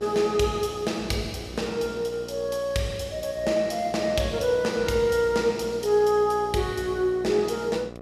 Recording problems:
electrical hum; 60 Hz, harmonics up to 2 kHz, SNR 16 dB

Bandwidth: 15 kHz